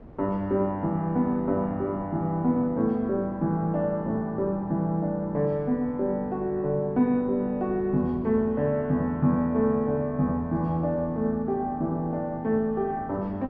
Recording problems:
wind on the microphone; below 360 Hz, SNR 20 dB

